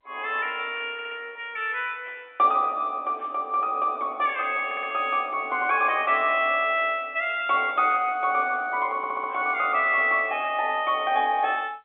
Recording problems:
phone line; 240 Hz to 3.7 kHz, G.711
audio stuttering; at 1 s, at 4.5 s and at 9 s

